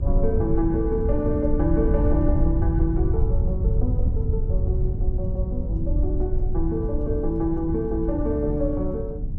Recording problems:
low-frequency rumble; below 84 Hz, SNR -1 dB
wind on the microphone; below 180 Hz, SNR 14 dB

